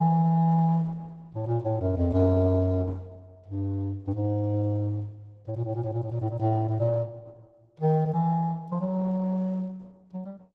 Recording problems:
codec artefacts; Opus, log-spectral distance 2 dB

